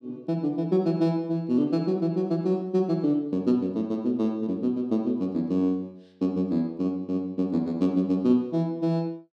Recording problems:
none

